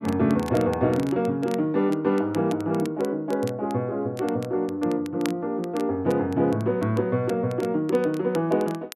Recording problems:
crackling; vinyl, SNR 21 dB

